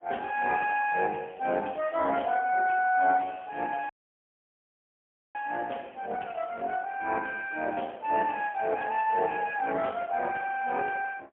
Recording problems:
phone line; 300 Hz to 3.3 kHz, AMR-NB, then MP3
dropout; at 4 s for 1.5 s

